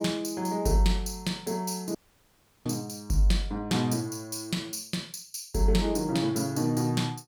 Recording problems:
audio cutting out; at 2 s for 0.5 s

